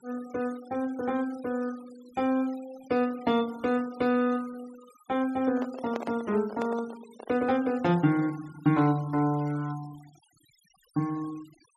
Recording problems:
noise reduction artefacts; signal-to-artefact ratio 23 dB
handling noise; from 5.5 to 7.5 s; peak -2 dB vs average level

